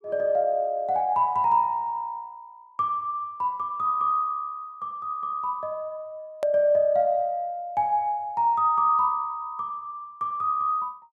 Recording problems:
hard cut with a click; at 6.5 s

